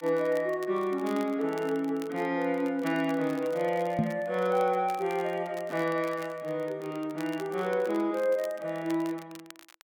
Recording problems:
crackle; vinyl, SNR 22 dB
microphone thump; at 4 s; peak +6 dB vs average level

